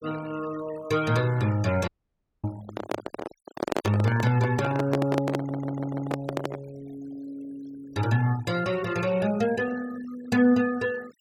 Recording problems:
noise reduction artefacts; signal-to-artefact ratio 19 dB
audio cutting out; at 2 s for 0.5 s
microphone handling noise; from 2.5 to 6.5 s; peak +3 dB vs average level
stutter; at 5.5 s

